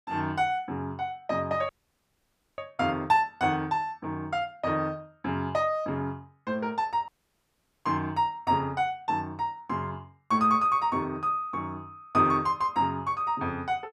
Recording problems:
dropout; at 1.5 s for 1 s and at 7 s for 1 s

